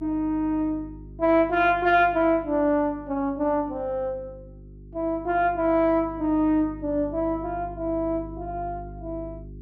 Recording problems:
hum; 50 Hz, harmonics up to 400 Hz, SNR 18 dB

